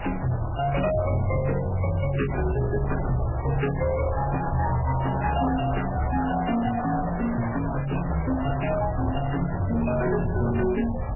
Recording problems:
lossy compression; MP3, then MP3, log-spectral distance 8 dB, nothing above 2.8 kHz
distortion; hard clipping, uneven, signal-to-distortion ratio 11 dB
hiss; SNR 10 dB
wind noise; below 100 Hz, SNR 10 dB

